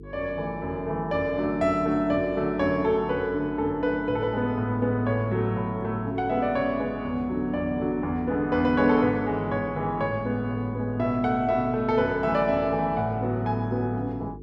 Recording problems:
hum; 50 Hz, harmonics up to 450 Hz, SNR 17 dB

